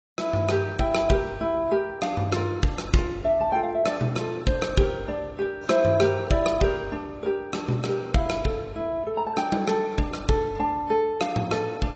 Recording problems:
lossy codec; AAC, log-spectral distance 2 dB, nothing above 7.8 kHz

